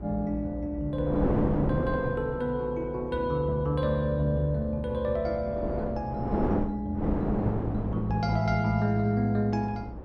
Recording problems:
hum; 60 Hz, harmonics up to 660 Hz, SNR 14 dB
wind on the microphone; below 480 Hz, SNR 4 dB

